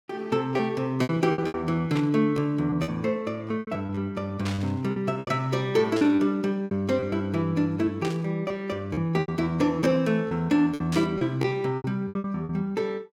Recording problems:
packet loss; 12% of the sound replaced, filled with repeated pitch periods
static burst; 5 times, first at 2 s; peak -5 dB vs average level

